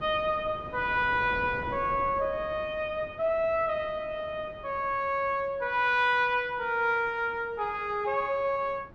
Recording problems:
wind on the microphone; below 570 Hz, SNR 18 dB

